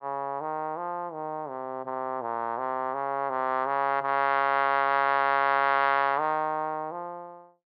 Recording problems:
treble missing; nothing above 5.5 kHz

